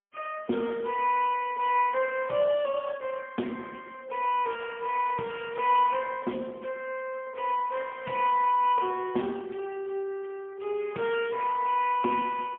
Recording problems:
phone line; 170 Hz to 3.3 kHz, AMR-NB, then MP3

